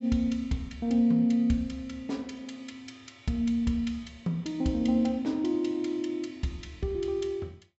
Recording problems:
treble missing; nothing above 7.7 kHz

